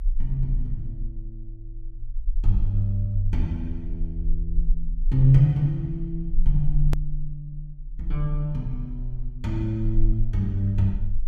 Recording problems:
low-frequency rumble; below 34 Hz, strongest tone 20 Hz, SNR 6 dB
click at an edit; at 7 s

